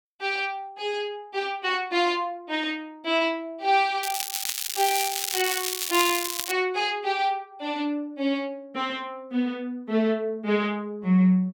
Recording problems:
crackle; from 4 to 6.5 s; loose cable, SNR 1 dB

